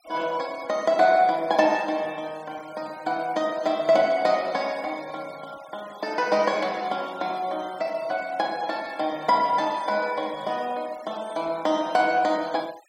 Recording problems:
noise reduction artefacts; signal-to-artefact ratio 23 dB

